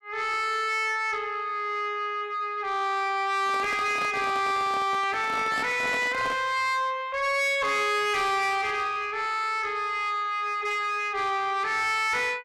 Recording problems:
distortion; soft clipping, signal-to-distortion ratio 10 dB
microphone handling noise; from 3.5 to 6.5 s; peak -4 dB vs average level

